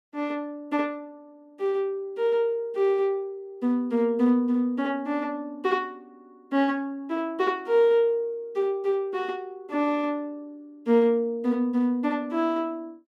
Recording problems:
none

